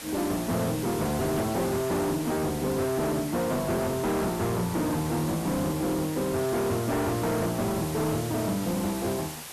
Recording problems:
distortion; soft clipping, signal-to-distortion ratio 7 dB
hiss; slope -1 dB per octave, SNR 10 dB

